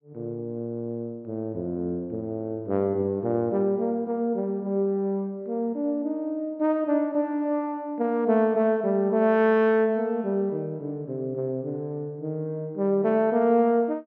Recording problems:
treble cut off; nothing above 8 kHz

